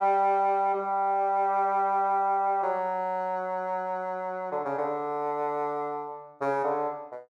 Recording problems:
none

